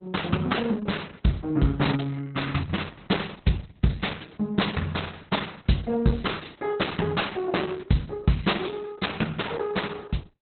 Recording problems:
lossy codec; Opus, log-spectral distance 7 dB, nothing above 4.1 kHz

